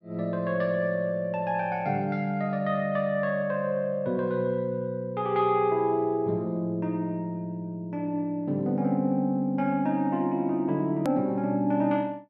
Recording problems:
click at an edit; at 11 s

